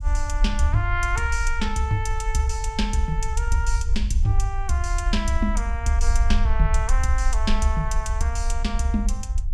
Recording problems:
low-frequency rumble; below 56 Hz, SNR 0 dB

